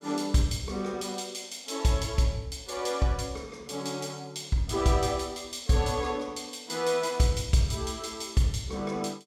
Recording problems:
none

